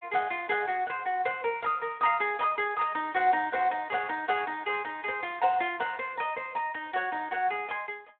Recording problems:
telephone audio; 300 Hz to 3.5 kHz, Speex

